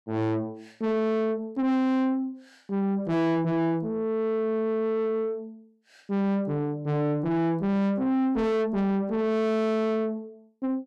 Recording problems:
distortion; soft clipping, signal-to-distortion ratio 7 dB

